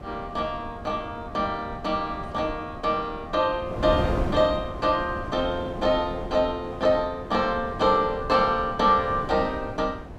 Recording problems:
wind noise; below 480 Hz, SNR 10 dB

